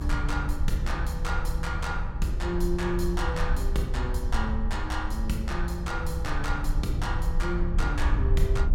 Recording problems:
low-frequency rumble; below 66 Hz, SNR -1 dB

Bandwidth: 16.5 kHz